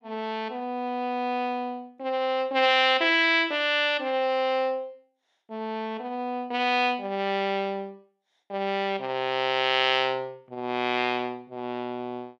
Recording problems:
none

